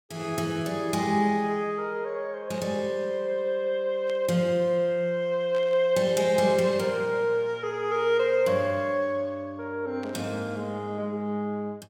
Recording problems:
burst of static; 4 times, first at 2.5 s; peak -15 dB vs average level

